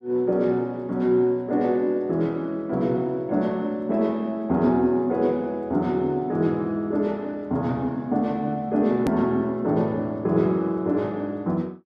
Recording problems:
edit click; at 9 s

